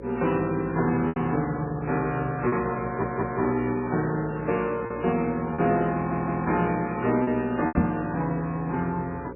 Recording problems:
lossy codec; MP3, log-spectral distance 3 dB, nothing above 2.7 kHz
hum; 60 Hz, harmonics up to 540 Hz, SNR 15 dB
lost packets; 4% of the sound replaced, filled with repeated pitch periods
stutter; at 3 s and at 6 s
knock on the microphone; at 8 s; peak +7 dB vs average level

